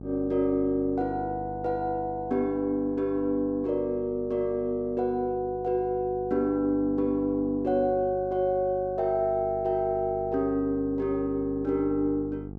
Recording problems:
mains hum; 50 Hz, harmonics up to 850 Hz, SNR 14 dB

